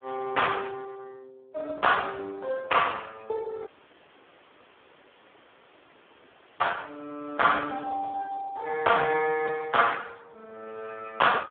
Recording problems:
telephone audio; 170 Hz to 3.5 kHz, Speex
audio cutting out; at 3.5 s for 3 s

